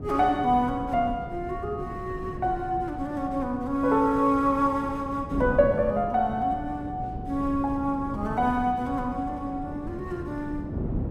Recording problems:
wind on the microphone; below 270 Hz, SNR 10 dB

